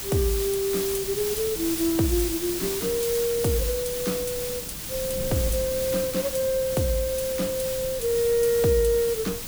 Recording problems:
background hiss; slope 0 dB per octave, SNR 5 dB
wind noise; below 230 Hz, SNR 16 dB

